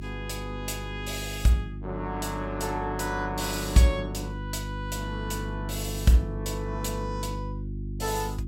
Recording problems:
hum; 50 Hz, harmonics up to 350 Hz, SNR 6 dB

